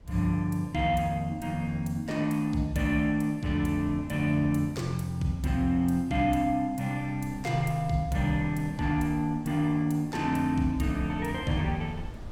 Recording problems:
wind on the microphone; below 140 Hz, SNR 20 dB

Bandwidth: 17 kHz